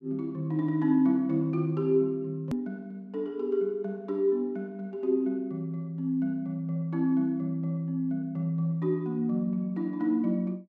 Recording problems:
edit click; at 2.5 s

